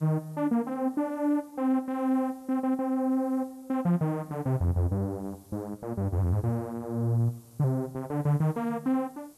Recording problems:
background hiss; SNR 29 dB

